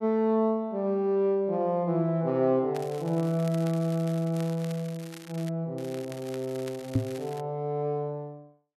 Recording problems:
crackling; from 2.5 to 5.5 s and from 6 to 7.5 s; loose cable, SNR 19 dB
microphone bump; at 7 s; peak +6 dB vs average level

